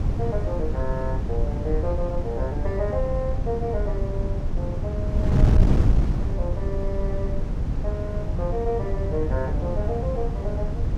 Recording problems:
wind noise; below 130 Hz, SNR -5 dB

